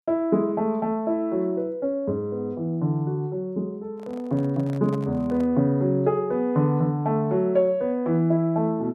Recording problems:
handling noise; from 4 to 5.5 s; peak -12 dB vs average level

